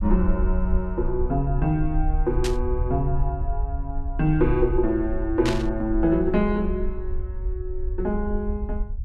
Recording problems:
rumble; below 58 Hz, SNR 5 dB
burst of static; at 2.5 s and at 5.5 s; peak 0 dB vs average level

